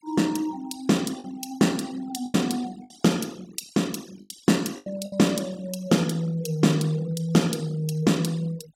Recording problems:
denoising artefacts; signal-to-artefact ratio 22 dB
lost packets; 4% of the sound replaced, filled with the last packet

